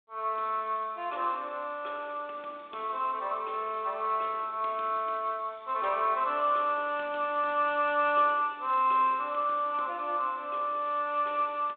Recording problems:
phone line; 280 Hz to 3.6 kHz, G.726

